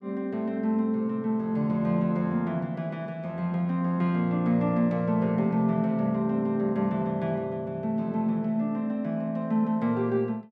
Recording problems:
none

